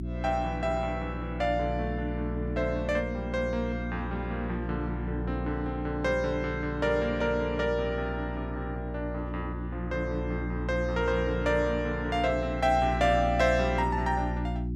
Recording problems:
hum; 60 Hz, harmonics up to 360 Hz, SNR 5 dB

